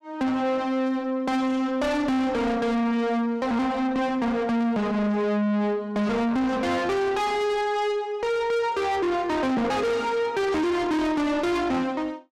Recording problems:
distortion; soft clipping, signal-to-distortion ratio 7 dB

